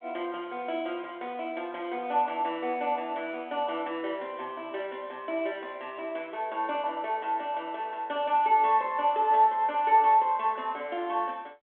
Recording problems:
telephone audio; 260 Hz to 3.6 kHz, G.726

